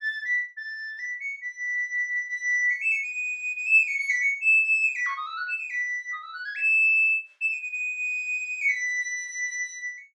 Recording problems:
none

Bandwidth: 12 kHz